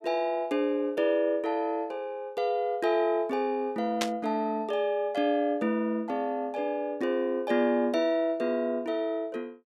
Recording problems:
burst of static; at 4 s; peak +3 dB vs average level

